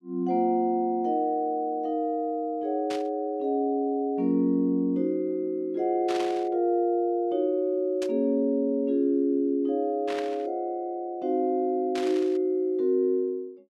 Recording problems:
burst of static; 5 times, first at 3 s; peak -7 dB vs average level

